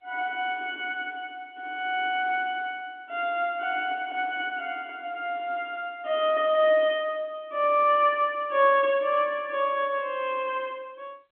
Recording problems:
phone line; 240 Hz to 3.4 kHz, G.711

